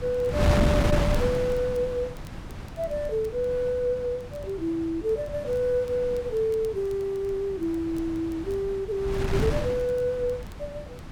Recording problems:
wind on the microphone; below 340 Hz, SNR 4 dB
crackling; vinyl, SNR 30 dB

